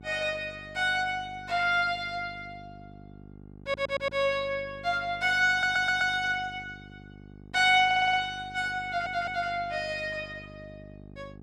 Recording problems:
hum; 50 Hz, harmonics up to 850 Hz, SNR 21 dB
audio stuttering; 4 times, first at 3.5 s

